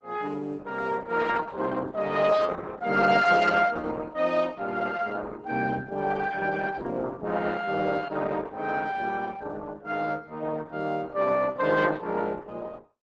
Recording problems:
lossy compression; Opus, log-spectral distance 4 dB, nothing above 7.8 kHz

